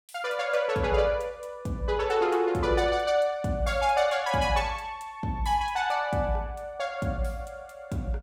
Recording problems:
none

